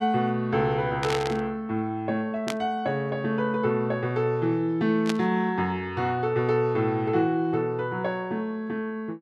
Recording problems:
static burst; at 1 s, at 2.5 s and at 5 s; peak -1 dB vs average level

